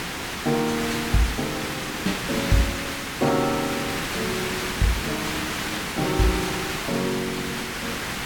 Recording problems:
hiss; SNR 1 dB

